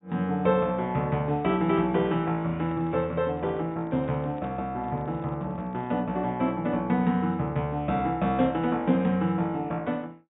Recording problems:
treble cut off; nothing above 4 kHz
microphone handling noise; from 2.5 to 6 s; peak -11 dB vs average level

